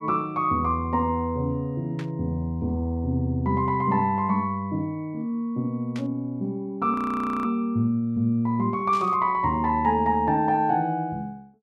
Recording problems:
burst of static; at 2 s, at 6 s and at 9 s; peak -11 dB vs average level
frozen audio; at 7 s for 0.5 s

